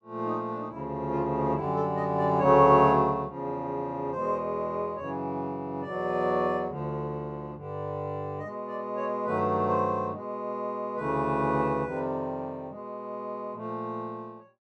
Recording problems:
none

